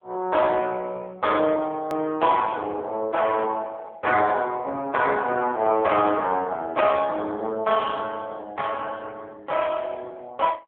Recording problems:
phone line; 240 Hz to 3.3 kHz, AMR-NB
click at an edit; at 2 s

